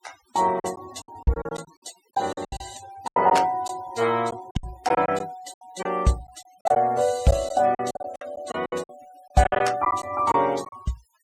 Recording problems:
noise reduction artefacts; signal-to-artefact ratio 21 dB
lost packets; 14% of the sound replaced, filled with silence

